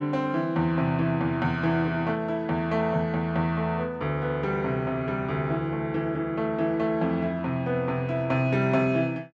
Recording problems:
none

